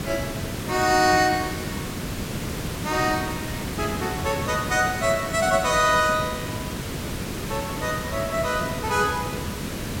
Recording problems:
background hiss; SNR 6 dB

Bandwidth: 16.5 kHz